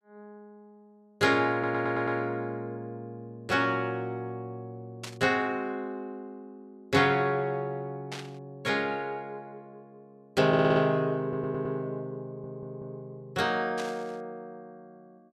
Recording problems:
audio stuttering; 4 times, first at 1.5 s
static burst; at 5 s, at 8 s and at 14 s; peak -5 dB vs average level

